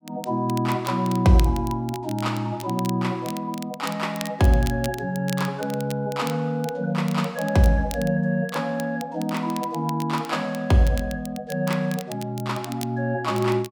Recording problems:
crackling; vinyl, SNR 17 dB

